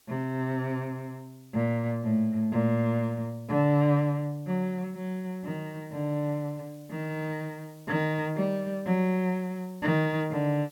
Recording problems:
hiss; slope 0 dB per octave, SNR 29 dB

